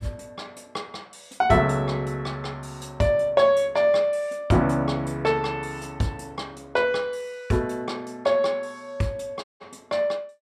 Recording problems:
dropout; at 9.5 s

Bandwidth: 14.5 kHz